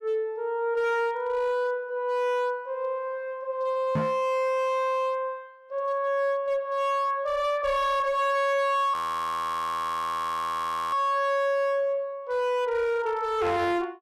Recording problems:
distorted audio; hard clipping, signal-to-distortion ratio 11 dB
knock on the microphone; at 4 s; peak +3 dB vs average level
frozen audio; at 9 s for 2 s

